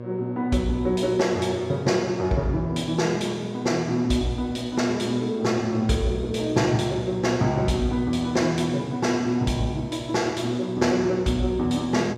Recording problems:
hum; 60 Hz, harmonics up to 1.2 kHz, SNR 12 dB

